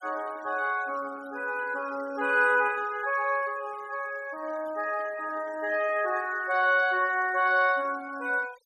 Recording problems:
denoising artefacts; signal-to-artefact ratio 23 dB

